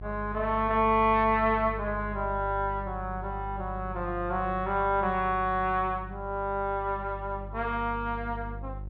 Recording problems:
hum; 50 Hz, harmonics up to 400 Hz, SNR 12 dB

